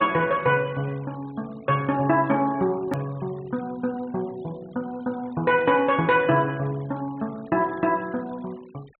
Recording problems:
treble missing; nothing above 4 kHz
noise reduction artefacts; signal-to-artefact ratio 25 dB
hard cut with a click; at 3 s

